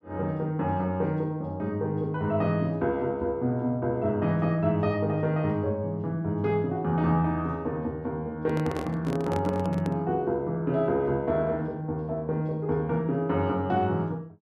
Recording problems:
handling noise; from 8.5 to 10 s; peak -4 dB vs average level

